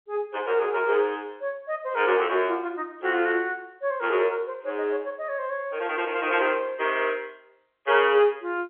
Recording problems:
phone line; 320 Hz to 3.4 kHz, G.711

